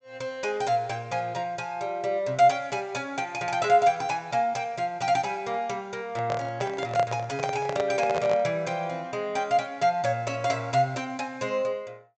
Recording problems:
treble missing; nothing above 8 kHz
microphone handling noise; from 6 to 8.5 s; peak +1 dB vs average level

